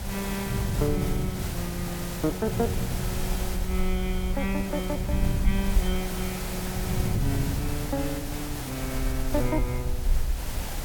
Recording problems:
hiss; slope -3 dB per octave, SNR 4 dB
low-frequency rumble; below 56 Hz, SNR 3 dB
wind on the microphone; below 150 Hz, SNR 3 dB

